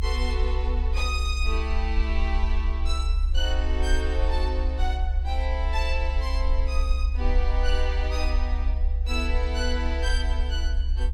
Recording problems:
rumble; below 66 Hz, SNR -5 dB

